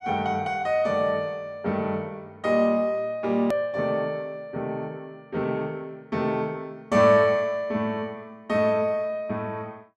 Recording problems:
hard cut with a click; at 3.5 s

